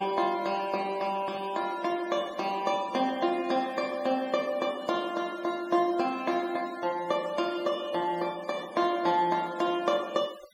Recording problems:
denoising artefacts; signal-to-artefact ratio 20 dB

